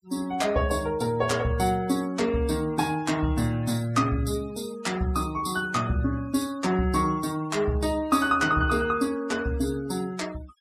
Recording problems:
denoising artefacts; signal-to-artefact ratio 21 dB

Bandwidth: 14.5 kHz